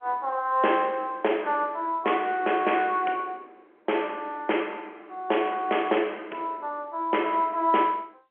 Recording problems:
phone line; 260 Hz to 3.3 kHz, G.711

